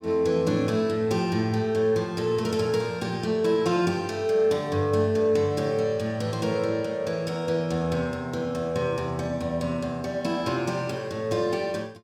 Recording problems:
none

